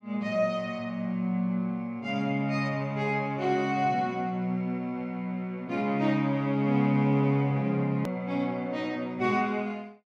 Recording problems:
hard cut with a click; at 8 s

